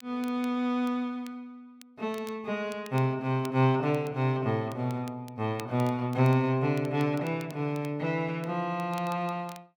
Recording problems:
crackle; vinyl, SNR 24 dB

